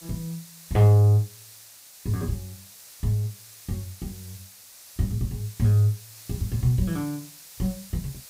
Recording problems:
background hiss; slope +2 dB per octave, SNR 19 dB

